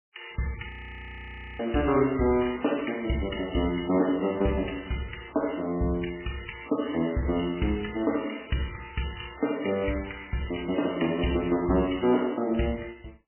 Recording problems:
codec artefacts; MP3, log-spectral distance 8 dB, nothing above 3 kHz
frozen audio; at 0.5 s for 1 s

